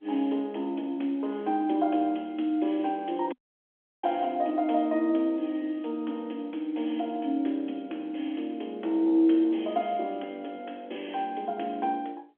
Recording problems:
telephone audio; 240 Hz to 3.5 kHz, G.711
dropout; at 3.5 s for 0.5 s

